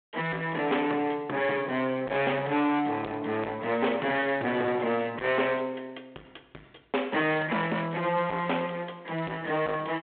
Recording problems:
telephone audio; 300 Hz to 3.6 kHz, G.726
distorted audio; soft clipping, signal-to-distortion ratio 10 dB

